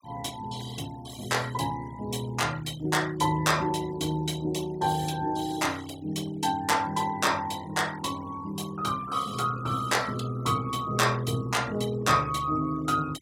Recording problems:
noise reduction artefacts; signal-to-artefact ratio 20 dB

